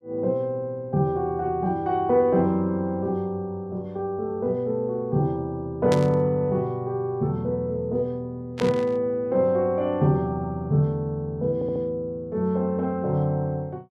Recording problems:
static burst; at 6 s and at 8.5 s; peak -3 dB vs average level
stutter; at 12 s

